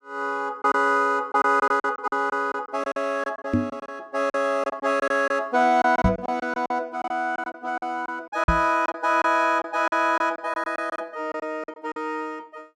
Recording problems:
lost packets; 11% of the sound replaced, filled with silence
knock on the microphone; at 3.5 s, at 6 s and at 8.5 s; peak +7 dB vs average level

